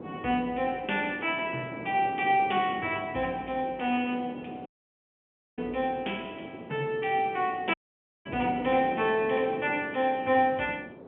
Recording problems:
telephone audio; 190 Hz to 3.3 kHz, G.711
wind noise; below 530 Hz, SNR 13 dB
audio cutting out; at 4.5 s for 1 s and at 7.5 s for 0.5 s

